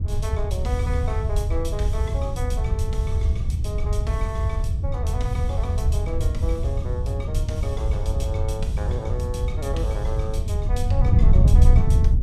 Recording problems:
wind noise; below 90 Hz, SNR -9 dB

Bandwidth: 14 kHz